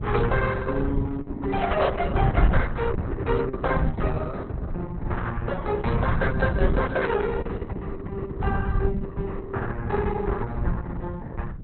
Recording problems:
codec artefacts; Opus, log-spectral distance 3 dB, nothing above 4 kHz
wind on the microphone; below 130 Hz, SNR 1 dB

